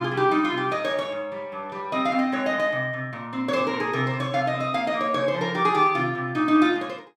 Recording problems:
none

